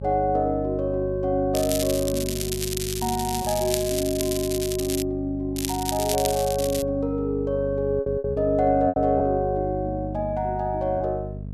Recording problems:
mains hum; 50 Hz, harmonics up to 500 Hz, SNR 9 dB
lost packets; 3% of the sound replaced, filled with repeated pitch periods
crackle; from 1.5 to 5 s and from 5.5 to 7 s; loose cable, SNR 6 dB

